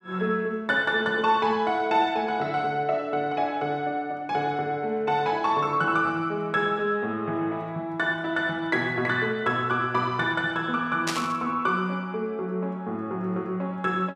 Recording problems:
static burst; at 11 s; peak +2 dB vs average level

